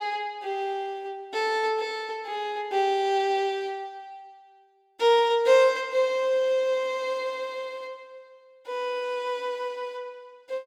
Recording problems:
none

